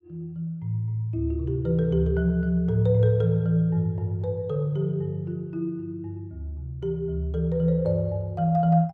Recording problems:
none

